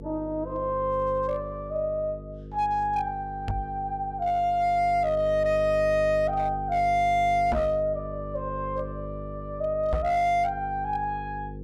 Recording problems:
distortion; hard clipping, uneven, signal-to-distortion ratio 11 dB
electrical hum; 50 Hz, harmonics up to 500 Hz, SNR 12 dB
knock on the microphone; at 3.5 s, at 7.5 s and at 10 s; peak +2 dB vs average level

